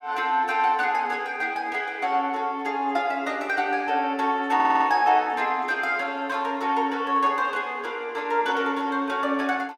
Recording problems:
audio stuttering; at 4.5 s

